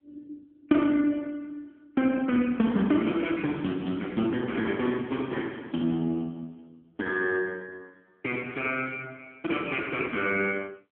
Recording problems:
telephone audio; 190 Hz to 3.3 kHz, AMR-NB

